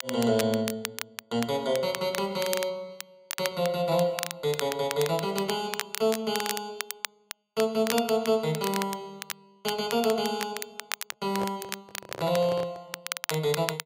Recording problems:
crackling; vinyl, SNR 8 dB
handling noise; from 11 to 13 s; peak -2 dB vs average level

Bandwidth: 15.5 kHz